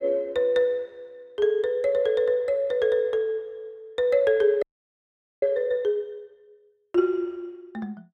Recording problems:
frozen audio; at 4.5 s for 1 s

